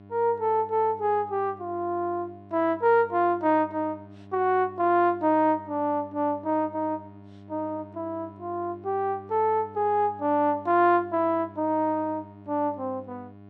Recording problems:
hum; 50 Hz, harmonics up to 1.4 kHz, SNR 21 dB

